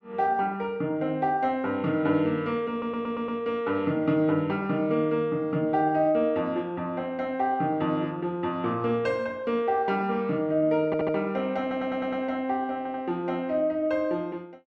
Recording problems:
stutter; 4 times, first at 2.5 s

